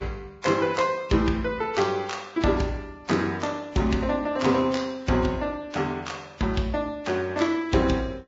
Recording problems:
lossy codec; Vorbis, log-spectral distance 3 dB, nothing above 7.3 kHz

